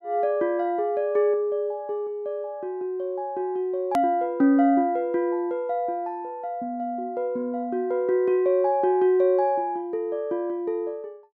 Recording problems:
hard cut with a click; at 4 s

